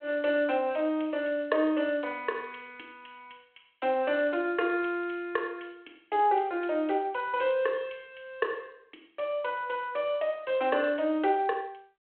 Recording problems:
phone line; 280 Hz to 3.3 kHz, G.726

